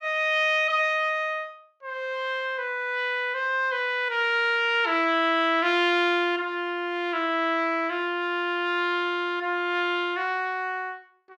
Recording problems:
none

